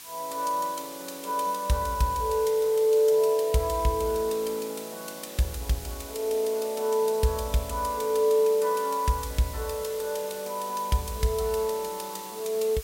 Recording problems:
hiss; slope +2 dB per octave, SNR 14 dB

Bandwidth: 16 kHz